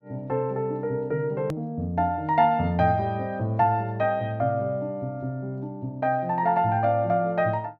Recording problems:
edit click; at 1.5 s

